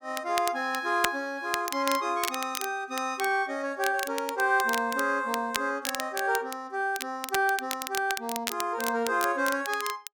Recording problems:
crackling; vinyl, SNR 8 dB

